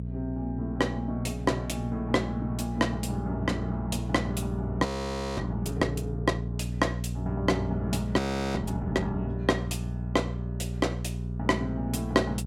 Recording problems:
electrical hum; 60 Hz, harmonics up to 480 Hz, SNR 3 dB
frozen audio; at 5 s for 0.5 s and at 8 s

